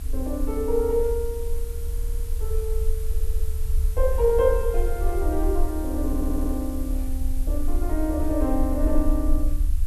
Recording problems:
background hiss; slope 0 dB per octave, SNR 18 dB
low-frequency rumble; below 54 Hz, SNR 2 dB
stutter; at 2 s, at 3 s and at 6 s

